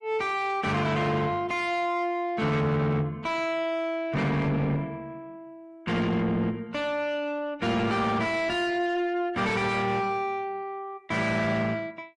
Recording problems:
lossy compression; AAC, then MP3, log-spectral distance 2 dB, nothing above 10.7 kHz
distorted audio; soft clipping, signal-to-distortion ratio 7 dB

